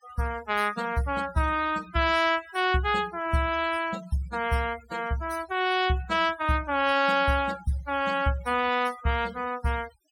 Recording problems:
denoising artefacts; signal-to-artefact ratio 17 dB

